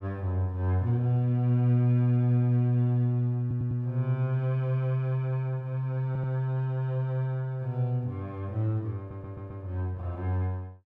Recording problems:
stutter; at 3.5 s, at 6 s and at 9 s

